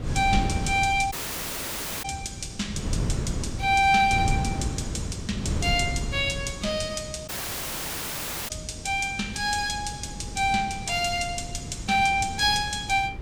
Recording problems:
wind on the microphone; below 200 Hz, SNR 7 dB
dropout; at 1 s for 1 s and at 7.5 s for 1 s

